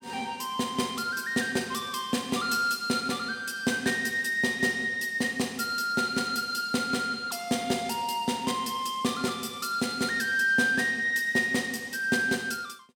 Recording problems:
none

